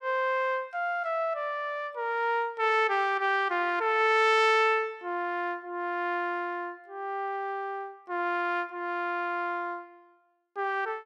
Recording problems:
none

